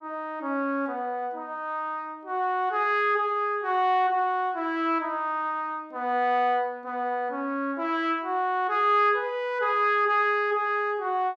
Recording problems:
none

